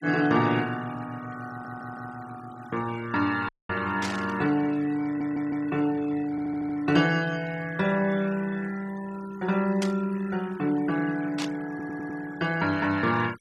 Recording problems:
denoising artefacts; signal-to-artefact ratio 18 dB
stutter; 4 times, first at 1.5 s
audio cutting out; at 3.5 s
burst of static; at 4 s, at 10 s and at 11 s; peak -2 dB vs average level

